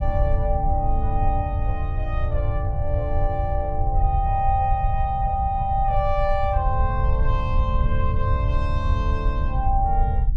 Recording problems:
rumble; below 84 Hz, SNR -1 dB

